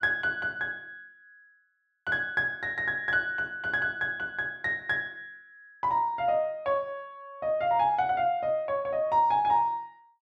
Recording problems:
none

